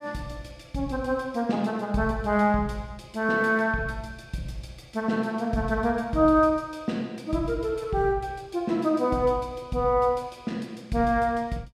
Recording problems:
none

